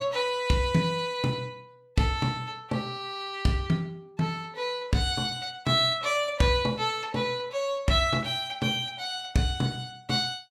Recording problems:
none

